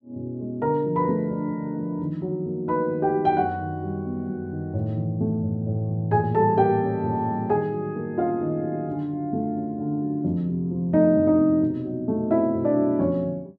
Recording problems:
none

